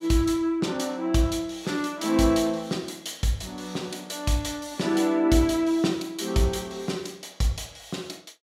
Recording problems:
none

